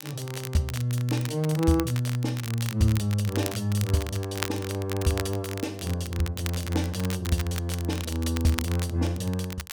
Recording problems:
crackle; vinyl, SNR 11 dB

